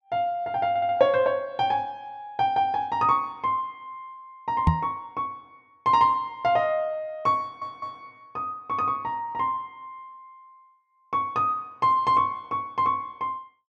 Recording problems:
stutter; at 0.5 s and at 7.5 s
knock on the microphone; at 4.5 s; peak +8 dB vs average level

